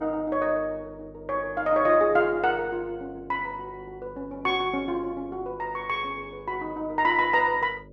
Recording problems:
hum; 50 Hz, harmonics up to 600 Hz, SNR 22 dB

